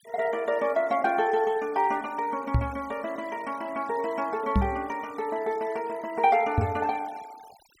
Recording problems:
noise reduction artefacts; signal-to-artefact ratio 23 dB
microphone thump; at 2.5 s, at 4.5 s and at 6.5 s; peak +7 dB vs average level

